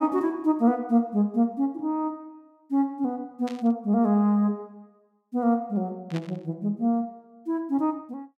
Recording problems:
static burst; at 3.5 s and at 6 s; peak -10 dB vs average level

